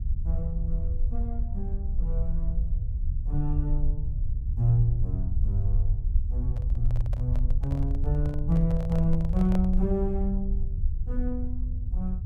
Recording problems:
low-frequency rumble; below 64 Hz, SNR -1 dB
microphone handling noise; from 6.5 to 10 s; peak -3 dB vs average level

